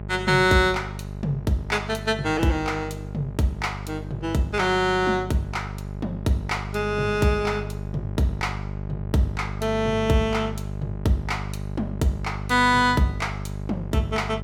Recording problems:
hum; 50 Hz, harmonics up to 1.1 kHz, SNR 9 dB

